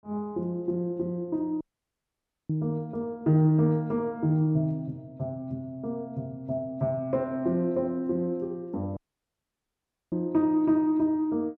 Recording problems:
dropout; at 1.5 s for 1 s and at 9 s for 1 s

